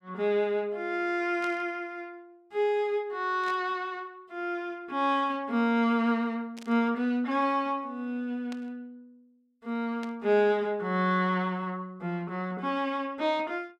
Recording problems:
static burst; 5 times, first at 1.5 s; peak -11 dB vs average level

